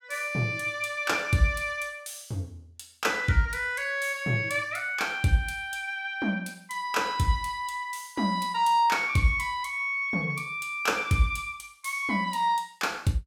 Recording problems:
none

